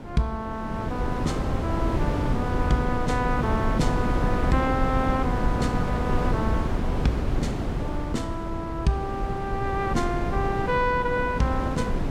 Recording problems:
wind noise; below 310 Hz, SNR 0 dB

